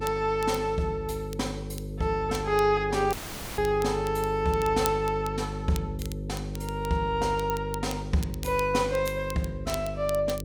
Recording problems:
electrical hum; 50 Hz, harmonics up to 550 Hz, SNR 8 dB
crackle; vinyl, SNR 17 dB
dropout; at 3 s

